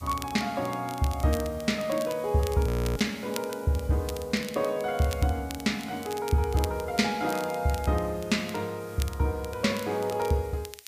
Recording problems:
hiss; SNR 23 dB
crackle; vinyl, SNR 16 dB
audio freezing; at 2.5 s

